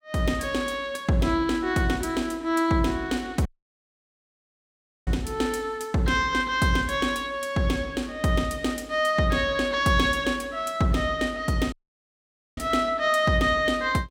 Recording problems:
audio cutting out; at 3.5 s for 1.5 s and at 12 s for 1 s

